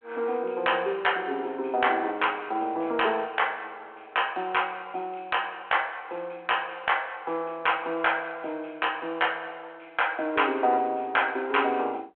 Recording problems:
telephone audio; 340 Hz to 3.3 kHz, G.726

